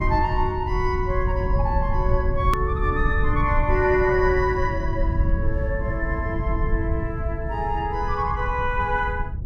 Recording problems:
low-frequency rumble; below 88 Hz, SNR 2 dB
click at an edit; at 2.5 s

